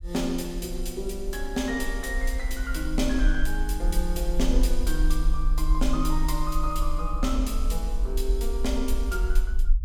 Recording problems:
rumble; below 44 Hz, SNR -1 dB

